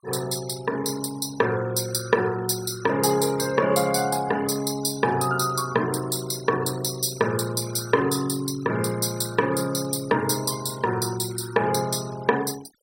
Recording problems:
denoising artefacts; signal-to-artefact ratio 17 dB

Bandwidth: 16 kHz